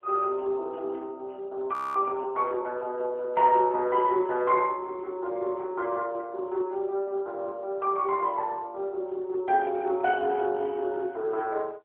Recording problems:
phone line; 300 Hz to 3.8 kHz, AMR-NB
audio freezing; at 1.5 s

